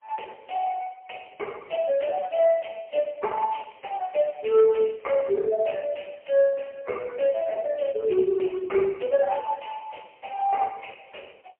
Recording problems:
telephone audio; 220 Hz to 3.1 kHz, AMR-NB, then MP3

